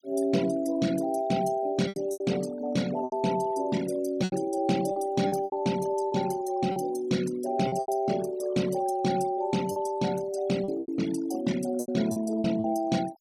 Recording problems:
denoising artefacts; signal-to-artefact ratio 15 dB
lost packets; 8% of the sound replaced, filled with repeated pitch periods

